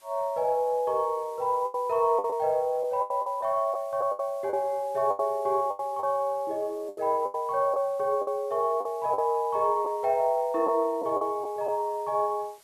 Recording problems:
hiss; slope +1 dB per octave, SNR 29 dB
lost packets; 8% of the sound replaced, filled with the last packet

